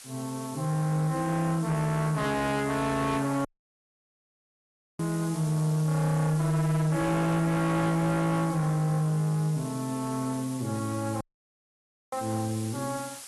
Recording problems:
lossy compression; AAC, log-spectral distance 8 dB, nothing above 12 kHz
distorted audio; soft clipping, signal-to-distortion ratio 10 dB
background hiss; slope +1 dB per octave, SNR 15 dB
audio cutting out; at 3.5 s for 1.5 s and at 11 s for 1 s

